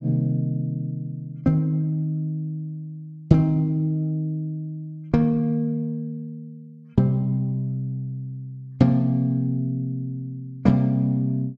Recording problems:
none

